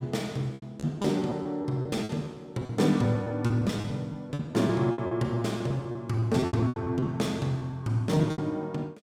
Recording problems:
lost packets; 15% of the sound replaced, filled with repeated pitch periods

